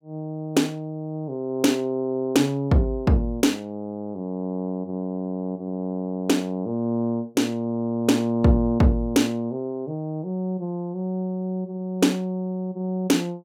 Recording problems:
none

